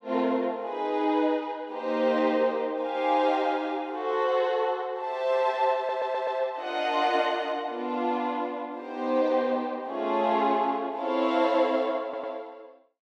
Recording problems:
stutter; at 6 s and at 12 s

